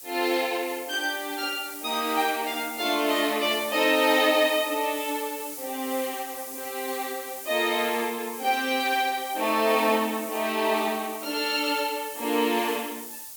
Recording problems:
hiss; SNR 11 dB

